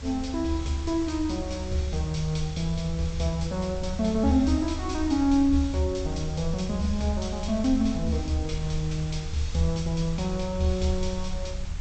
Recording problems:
treble cut off; nothing above 8 kHz
hum; 50 Hz, harmonics up to 350 Hz, SNR 18 dB
background hiss; slope -1 dB per octave, SNR 18 dB
rumble; below 76 Hz, SNR 9 dB

